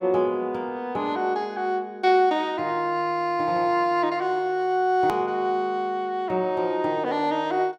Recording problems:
hard cut with a click; at 5 s

